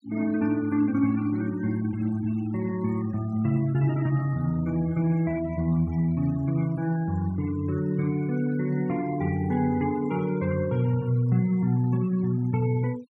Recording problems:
denoising artefacts; signal-to-artefact ratio 22 dB

